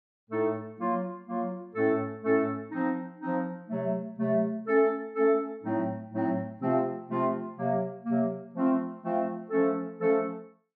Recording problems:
none

